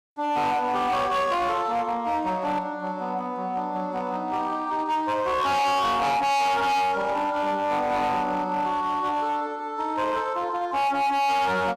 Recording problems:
distortion; hard clipping, signal-to-distortion ratio 7 dB

